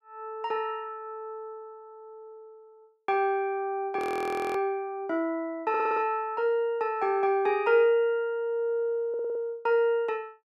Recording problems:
audio freezing; at 4 s for 0.5 s
stutter; at 5.5 s and at 9 s

